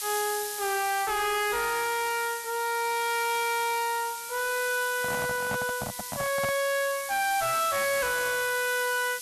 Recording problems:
distortion; soft clipping, signal-to-distortion ratio 5 dB
hiss; SNR 8 dB
microphone handling noise; from 5 to 6.5 s; peak -3 dB vs average level

